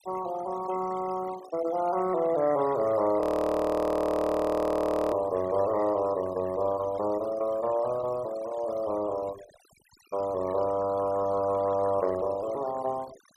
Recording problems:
noise reduction artefacts; signal-to-artefact ratio 18 dB
audio freezing; at 3 s for 2 s

